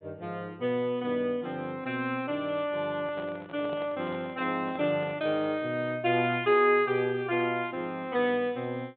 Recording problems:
treble cut off; nothing above 4 kHz
handling noise; from 3 to 5.5 s; peak -9 dB vs average level

